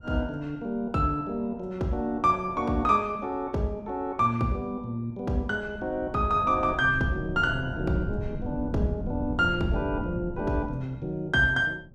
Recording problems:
wind on the microphone; below 190 Hz, SNR 10 dB

